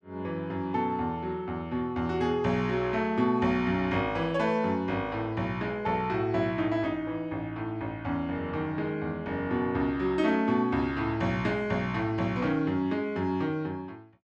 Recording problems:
none

